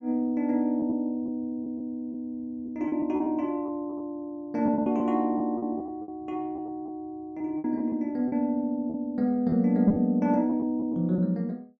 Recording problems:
packet loss; 9% of the sound replaced, filled with repeated pitch periods

